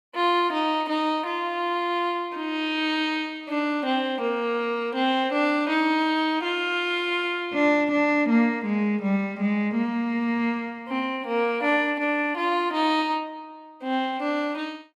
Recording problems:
none

